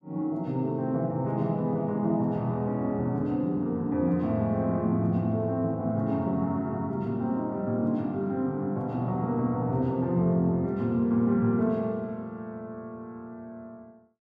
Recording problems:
none

